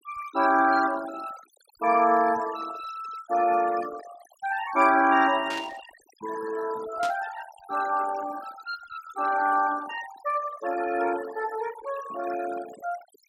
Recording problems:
denoising artefacts; signal-to-artefact ratio 15 dB
static burst; at 5.5 s and at 7 s; peak -7 dB vs average level

